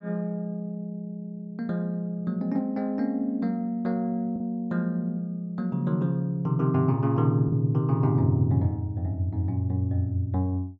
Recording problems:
low-pass filter; nothing above 8 kHz
packet loss; 0.7% of the sound replaced, filled with the last packet

